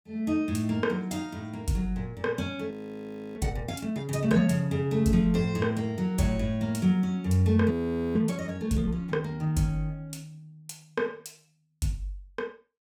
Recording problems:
audio freezing; at 2.5 s for 0.5 s and at 7.5 s

